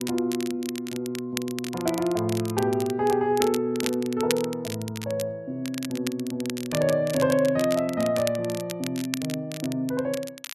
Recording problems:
crackle; vinyl, SNR 10 dB

